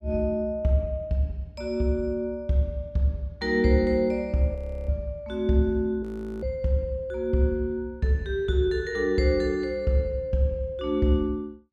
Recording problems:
audio freezing; at 4.5 s and at 6 s

